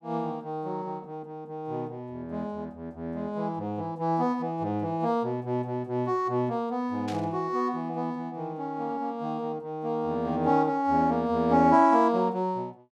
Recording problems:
burst of static; at 7 s; peak -9 dB vs average level

